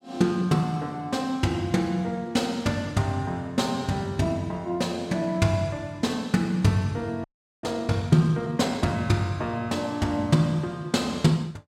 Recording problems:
audio freezing; at 7 s

